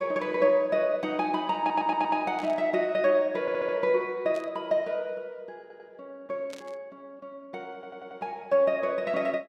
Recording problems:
stutter; 4 times, first at 1.5 s
burst of static; at 2.5 s, at 4.5 s and at 6.5 s; peak -13 dB vs average level

